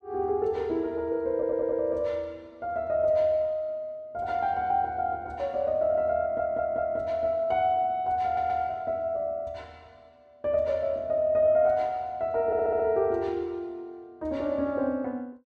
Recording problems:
stutter; 4 times, first at 1.5 s

